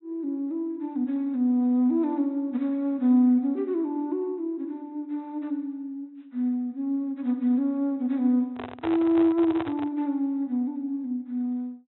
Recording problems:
treble missing; nothing above 3.9 kHz
handling noise; from 8.5 to 10 s; peak -4 dB vs average level

